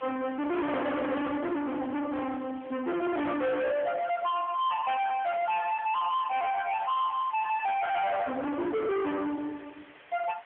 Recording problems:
phone line; 390 Hz to 3.5 kHz, AMR-NB
distorted audio; soft clipping, signal-to-distortion ratio 6 dB
hiss; SNR 22 dB

